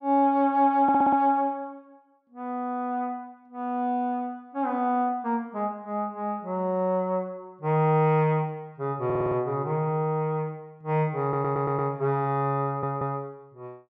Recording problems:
audio stuttering; 4 times, first at 1 s

